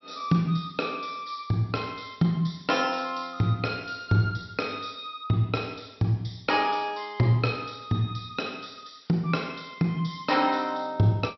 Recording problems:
low-pass filter; nothing above 5.6 kHz

